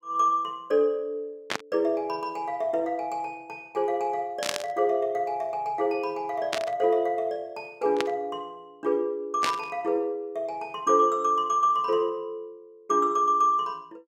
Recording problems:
burst of static; 5 times, first at 1.5 s; peak +3 dB vs average level

